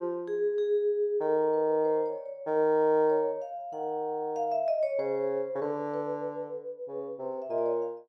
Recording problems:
none

